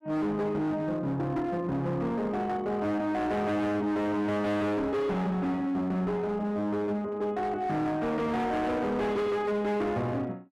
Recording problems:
distortion; hard clipping, signal-to-distortion ratio 8 dB

